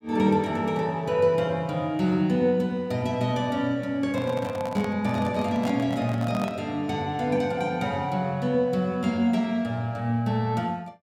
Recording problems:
handling noise; from 4 to 6.5 s; peak -5 dB vs average level

